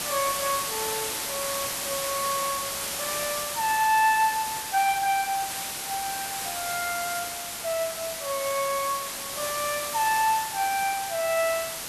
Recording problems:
background hiss; slope 0 dB per octave, SNR 3 dB

